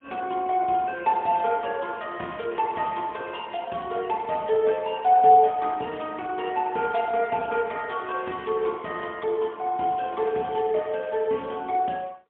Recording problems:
phone line; 170 Hz to 3.4 kHz, AMR-NB, then MP3

